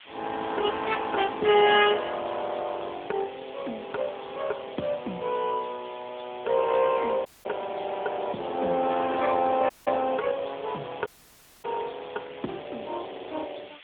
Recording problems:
phone line; 190 Hz to 3.4 kHz, AMR-NB
background hiss; SNR 19 dB
dropout; at 7.5 s, at 9.5 s and at 11 s for 0.5 s

